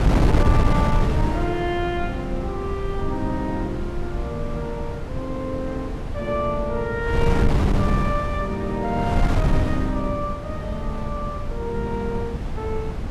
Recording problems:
wind noise; below 180 Hz, SNR -2 dB

